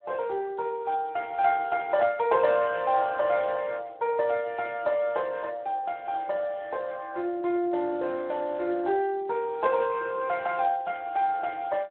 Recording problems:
phone line; 300 Hz to 3.6 kHz, Speex

